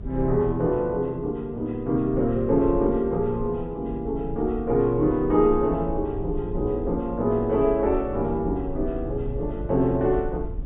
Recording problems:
treble missing; nothing above 4 kHz
hum; 50 Hz, harmonics up to 300 Hz, SNR 17 dB
rumble; below 68 Hz, SNR 13 dB

